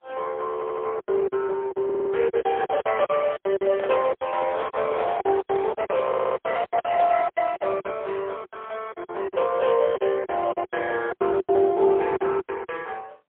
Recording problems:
telephone audio; 340 Hz to 3.5 kHz, AMR-NB, then MP3
packet loss; 15% of the sound replaced, filled with silence
audio stuttering; at 0.5 s, at 2 s and at 6 s
microphone handling noise; from 3.5 to 7 s; peak -4 dB vs average level

